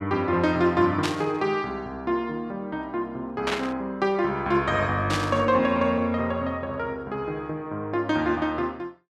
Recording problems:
static burst; at 1 s, at 3.5 s and at 5 s; peak +1 dB vs average level

